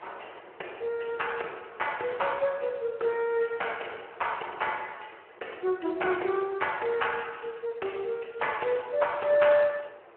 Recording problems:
phone line; 300 Hz to 3.1 kHz, Speex
wind on the microphone; below 1.3 kHz, SNR 22 dB

